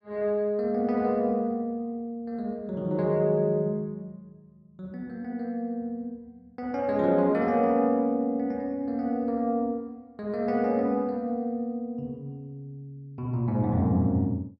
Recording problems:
none

